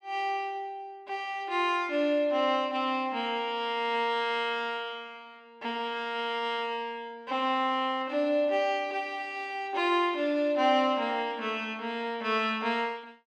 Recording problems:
none

